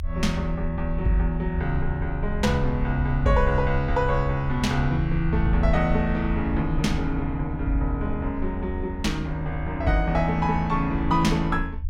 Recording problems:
low-frequency rumble; below 74 Hz, SNR 6 dB

